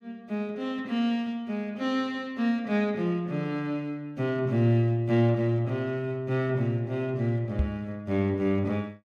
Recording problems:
knock on the microphone; at 7.5 s; peak +5 dB vs average level

